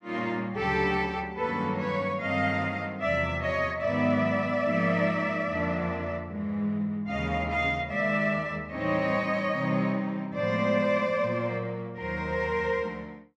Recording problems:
none

